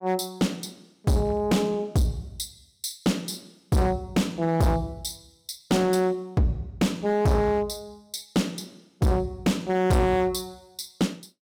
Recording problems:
distortion; hard clipping, signal-to-distortion ratio 7 dB

